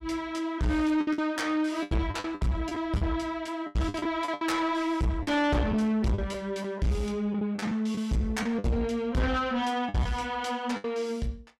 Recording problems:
distorted audio; soft clipping, signal-to-distortion ratio 7 dB
lost packets; 9% of the sound replaced, filled with the last packet

